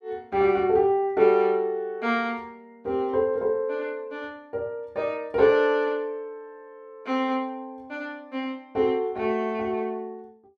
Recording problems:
none

